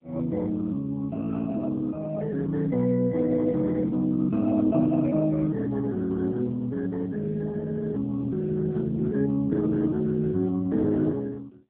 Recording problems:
telephone audio; 130 Hz to 2 kHz, AMR-NB

